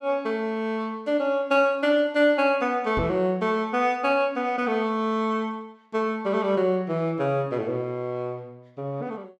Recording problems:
knock on the microphone; at 3 s; peak -2 dB vs average level

